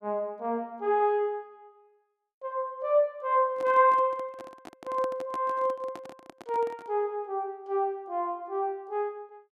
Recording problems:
microphone handling noise; from 3.5 to 7 s; peak -8 dB vs average level

